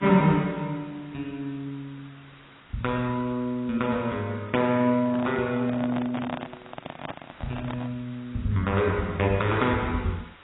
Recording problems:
codec artefacts; AAC, log-spectral distance 7 dB, nothing above 3.8 kHz
hiss; SNR 25 dB
microphone handling noise; from 5 to 8 s; peak -2 dB vs average level

